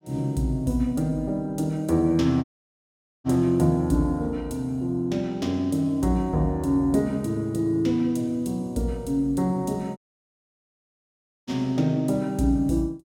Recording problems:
dropout; at 2.5 s for 1 s and at 10 s for 1.5 s

